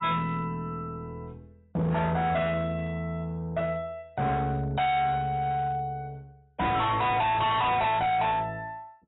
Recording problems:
lossy compression; AAC, log-spectral distance 2 dB, nothing above 3.8 kHz
distortion; hard clipping, signal-to-distortion ratio 7 dB

